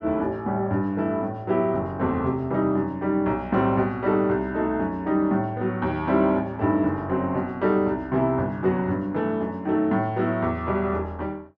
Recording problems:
none

